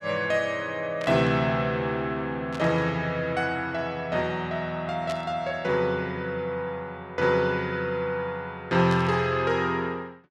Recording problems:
burst of static; 4 times, first at 1 s; peak -7 dB vs average level

